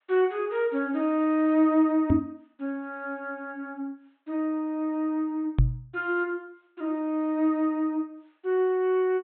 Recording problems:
treble cut off; nothing above 4 kHz
microphone thump; at 2 s and at 5.5 s; peak +9 dB vs average level

